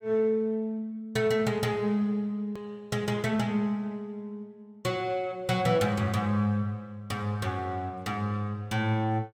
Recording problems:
hard cut with a click; at 2.5 s

